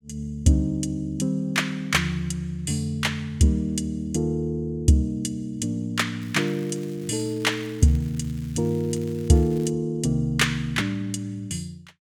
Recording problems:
crackling; from 6 to 9.5 s; loose cable, SNR 25 dB

